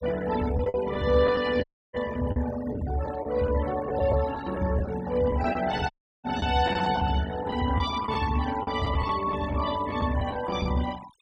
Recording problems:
denoising artefacts; signal-to-artefact ratio 15 dB
packet loss; 7% of the sound replaced, filled with the last packet
dropout; at 1.5 s and at 6 s

